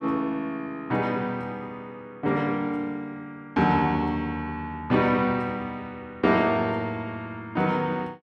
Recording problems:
none

